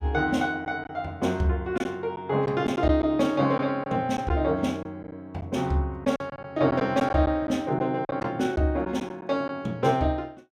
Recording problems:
lost packets; 5% of the sound replaced, filled with silence

